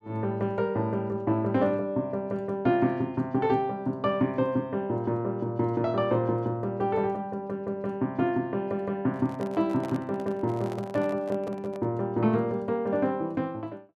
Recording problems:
handling noise; from 9 to 12 s; peak -8 dB vs average level

